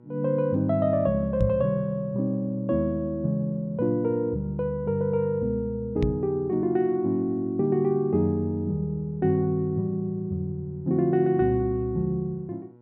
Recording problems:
hum; 60 Hz, harmonics up to 1.1 kHz, SNR 27 dB
knock on the microphone; at 1.5 s and at 6 s; peak +4 dB vs average level

